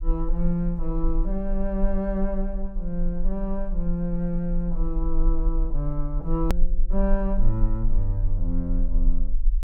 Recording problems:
low-frequency rumble; below 36 Hz, strongest tone 18 Hz, SNR 0 dB
edit click; at 6.5 s

